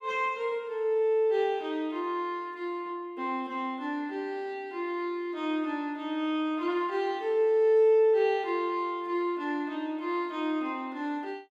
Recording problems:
none

